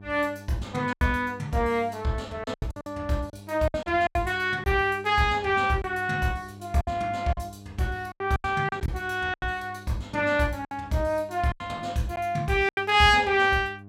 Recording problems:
hum; 50 Hz, harmonics up to 800 Hz, SNR 20 dB
packet loss; 9% of the sound replaced, filled with silence

